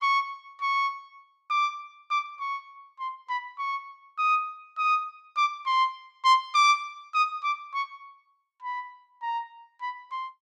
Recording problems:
none

